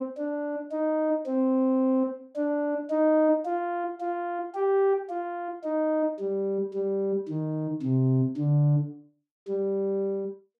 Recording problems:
none

